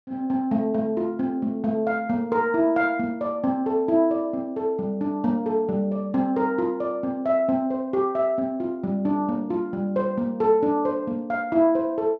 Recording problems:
none

